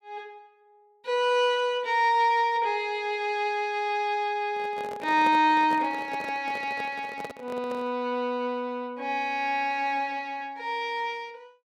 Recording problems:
microphone handling noise; from 4.5 to 8 s; peak -6 dB vs average level

